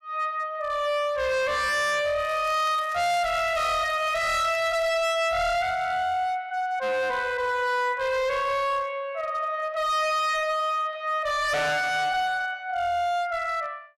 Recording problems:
distorted audio; hard clipping, signal-to-distortion ratio 8 dB
crackle; from 2 to 5 s; loose cable, SNR 22 dB

